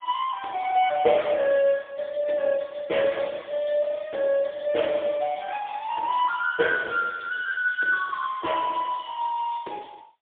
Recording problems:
telephone audio; 320 Hz to 3.4 kHz, AMR-NB, then MP3

